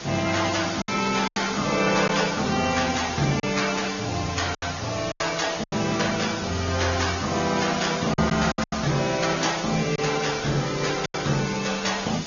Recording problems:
low-pass filter; nothing above 6.9 kHz
codec artefacts; Opus, then AAC, log-spectral distance 10 dB
hiss; slope -1 dB per octave, SNR 8 dB
lost packets; 6% of the sound replaced, filled with silence

